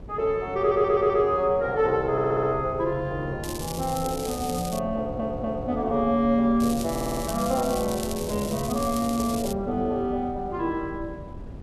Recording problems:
wind noise; below 250 Hz, SNR 14 dB
stutter; 4 times, first at 0.5 s
crackling; from 3.5 to 5 s and from 6.5 to 9.5 s; loose cable, SNR 12 dB

